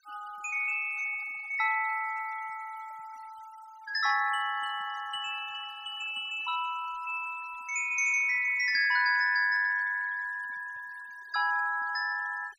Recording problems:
denoising artefacts; signal-to-artefact ratio 19 dB

